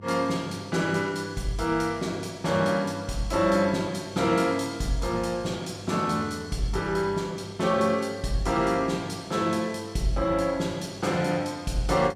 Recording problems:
hum; 50 Hz, harmonics up to 700 Hz, SNR 19 dB

